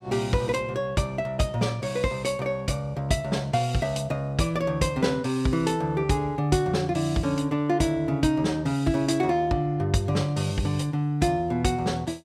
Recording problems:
none

